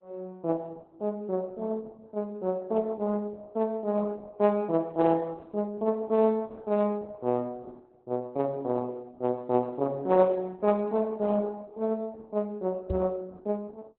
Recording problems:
lossy compression; Opus, then Opus, log-spectral distance 2 dB, nothing above 4 kHz
knock on the microphone; at 13 s; peak 0 dB vs average level

